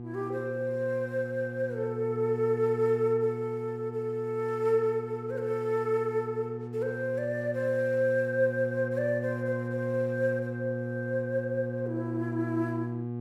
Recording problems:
electrical hum; 60 Hz, harmonics up to 840 Hz, SNR 7 dB

